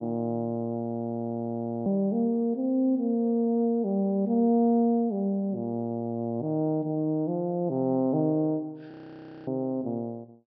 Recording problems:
treble missing; nothing above 5.5 kHz
audio freezing; at 1 s for 1 s and at 9 s for 0.5 s

